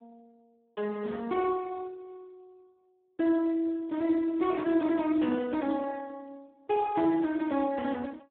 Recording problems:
phone line; 240 Hz to 2.2 kHz, Speex

